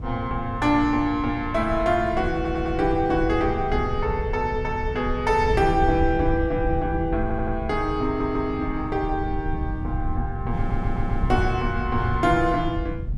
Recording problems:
low-frequency rumble; below 96 Hz, SNR 8 dB
wind on the microphone; below 150 Hz, SNR 10 dB
audio stuttering; 4 times, first at 2.5 s

